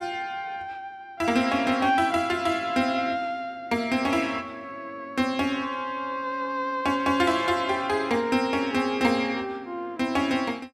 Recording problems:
none

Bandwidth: 14.5 kHz